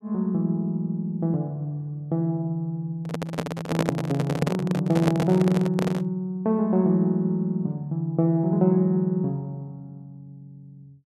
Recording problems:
microphone handling noise; from 3 to 6 s; peak +4 dB vs average level

